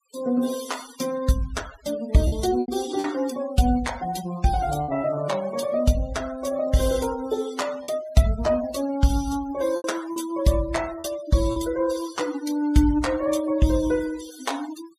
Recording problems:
noise reduction artefacts; signal-to-artefact ratio 16 dB
packet loss; 3% of the sound replaced, filled with repeated pitch periods

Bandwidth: 14.5 kHz